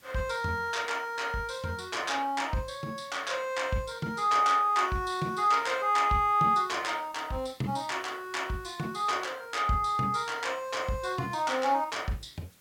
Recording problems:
background hiss; SNR 29 dB

